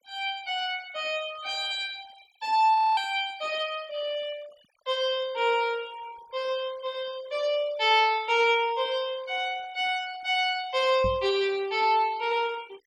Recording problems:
denoising artefacts; signal-to-artefact ratio 24 dB
frozen audio; at 3 s
knock on the microphone; at 11 s; peak -4 dB vs average level

